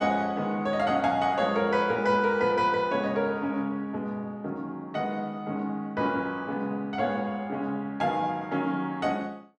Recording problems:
none

